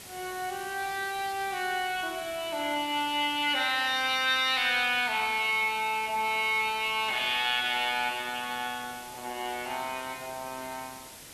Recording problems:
background hiss; slope -1 dB per octave, SNR 16 dB

